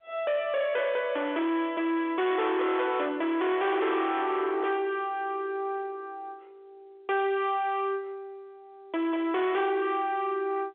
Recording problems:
phone line; 300 Hz to 3.5 kHz, G.711
distorted audio; soft clipping, signal-to-distortion ratio 8 dB

